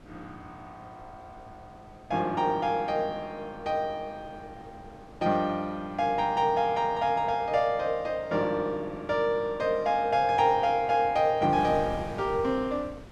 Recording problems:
wind noise; below 590 Hz, SNR 21 dB

